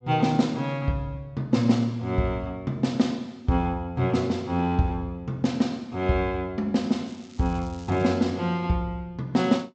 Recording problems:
treble cut off; nothing above 8 kHz
crackle; from 7 to 8 s; loose cable, SNR 26 dB

